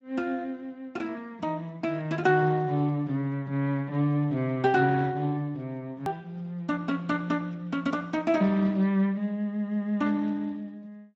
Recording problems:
lossy codec; Speex, log-spectral distance 2 dB, nothing above 18.3 kHz
hard cut with a click; at 6 s

